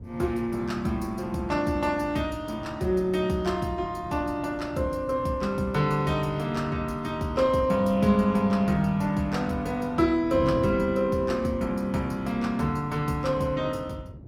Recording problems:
lossy compression; Opus, log-spectral distance 2 dB, nothing above 17.4 kHz
wind noise; below 220 Hz, SNR 15 dB

